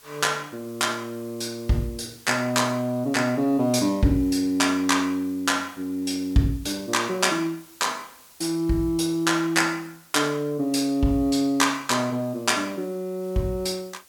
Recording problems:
background hiss; slope 0 dB per octave, SNR 25 dB

